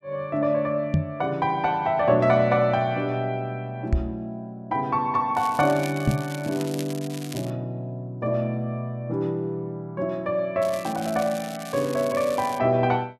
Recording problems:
microphone bump; at 1 s, at 4 s and at 6 s; peak +8 dB vs average level
crackle; from 5.5 to 7.5 s and from 11 to 13 s; loose cable, SNR 15 dB

